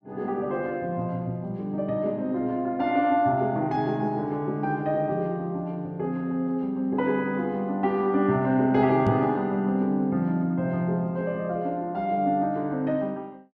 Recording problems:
knock on the microphone; at 9 s; peak +3 dB vs average level

